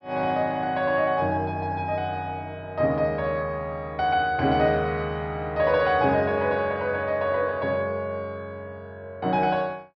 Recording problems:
treble missing; nothing above 5.5 kHz

